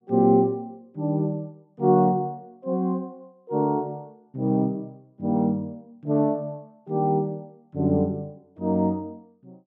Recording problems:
none

